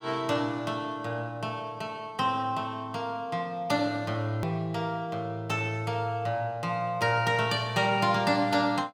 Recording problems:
hard cut with a click; at 4.5 s

